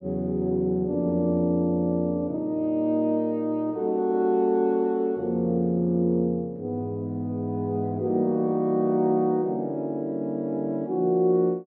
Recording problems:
none

